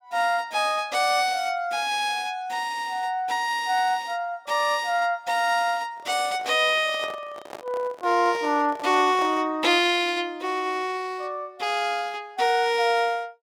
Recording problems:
handling noise; from 6 to 9.5 s; peak -8 dB vs average level

